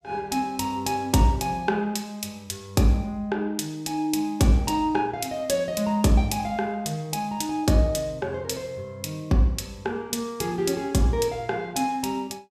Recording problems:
none

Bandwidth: 14 kHz